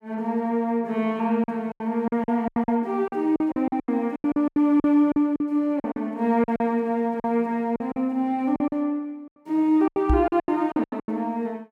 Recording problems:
packet loss; 15% of the sound replaced, filled with silence
microphone bump; at 10 s; peak +4 dB vs average level

